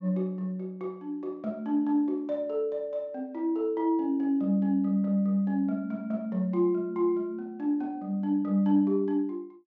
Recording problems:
treble cut off; nothing above 8 kHz

